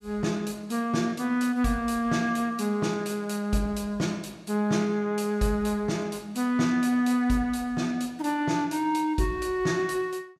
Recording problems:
none

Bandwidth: 14.5 kHz